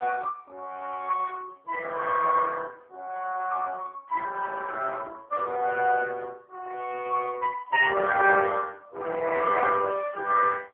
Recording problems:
phone line; 280 Hz to 2.8 kHz, AMR-NB

